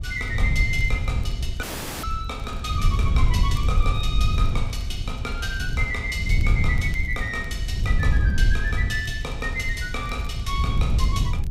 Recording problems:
wind noise; below 92 Hz, SNR -3 dB
crackling; vinyl, SNR 26 dB
dropout; at 1.5 s

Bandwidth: 15.5 kHz